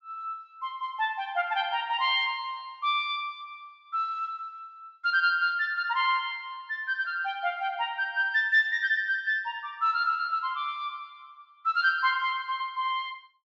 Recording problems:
treble cut off; nothing above 8 kHz

